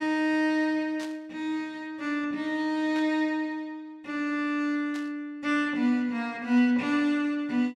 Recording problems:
burst of static; at 1 s, at 3 s and at 5 s; peak -11 dB vs average level

